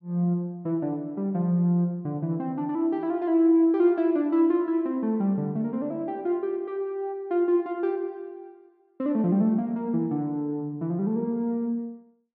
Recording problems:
none

